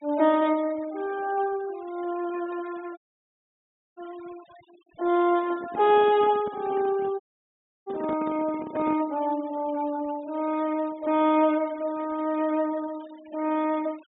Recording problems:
treble missing; nothing above 4 kHz
noise reduction artefacts; signal-to-artefact ratio 23 dB
audio cutting out; at 3 s for 1 s and at 7 s for 0.5 s
handling noise; from 5.5 to 9 s; peak -5 dB vs average level

